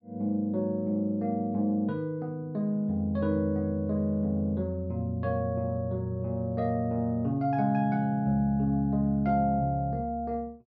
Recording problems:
none

